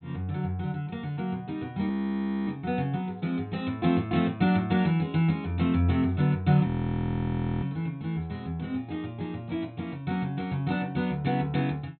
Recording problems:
treble missing; nothing above 4.2 kHz
frozen audio; at 2 s for 0.5 s and at 6.5 s for 1 s

